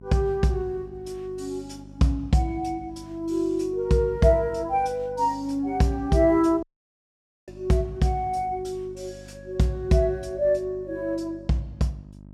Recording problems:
mains hum; 50 Hz, harmonics up to 650 Hz, SNR 20 dB
audio cutting out; at 6.5 s for 1 s

